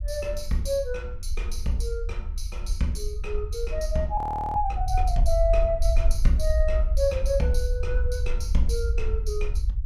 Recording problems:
low-frequency rumble; below 58 Hz, SNR 0 dB
frozen audio; at 4 s

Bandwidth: 15.5 kHz